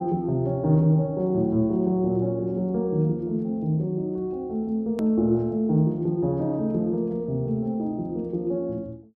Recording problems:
hard cut with a click; at 5 s

